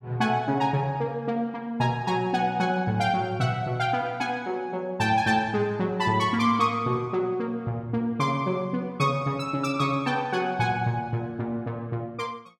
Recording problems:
none

